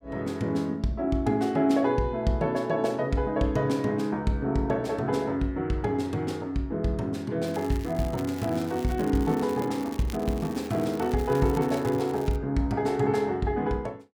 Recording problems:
crackle; from 7.5 to 12 s; loose cable, SNR 19 dB

